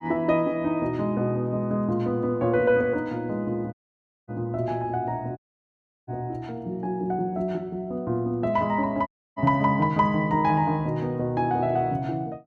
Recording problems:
dropout; at 3.5 s for 0.5 s, at 5.5 s for 0.5 s and at 9 s

